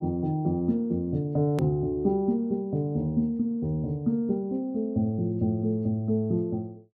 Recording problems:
edit click; at 1.5 s

